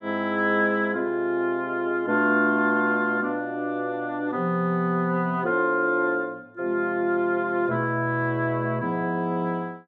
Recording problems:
none

